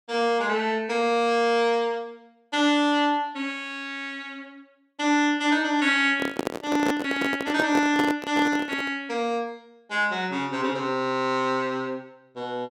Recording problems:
handling noise; from 6 to 9 s; peak +3 dB vs average level

